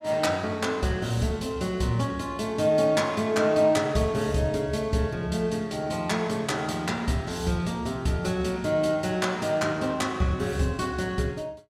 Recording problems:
none

